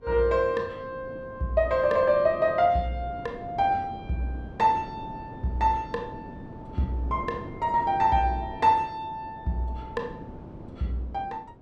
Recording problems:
wind on the microphone; below 380 Hz, SNR 16 dB

